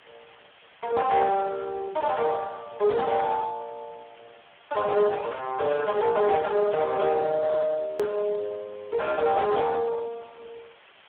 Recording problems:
phone line; 320 Hz to 3.8 kHz, Speex
distortion; hard clipping, uneven, signal-to-distortion ratio 12 dB
hiss; SNR 27 dB
edit click; at 8 s

